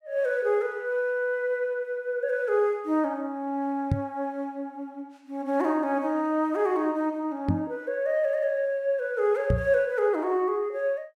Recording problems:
knock on the microphone; at 4 s, at 7.5 s and at 9.5 s; peak +5 dB vs average level

